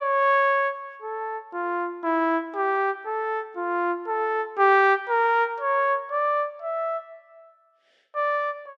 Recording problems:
none

